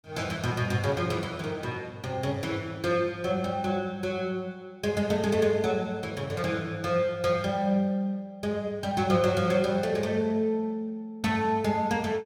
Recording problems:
none

